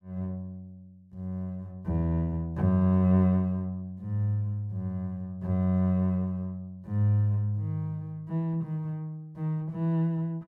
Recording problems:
none

